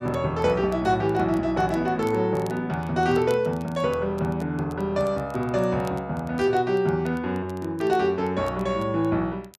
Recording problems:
crackle; vinyl, SNR 28 dB

